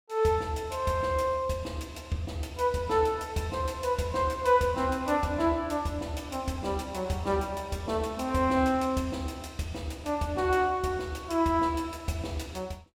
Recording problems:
none

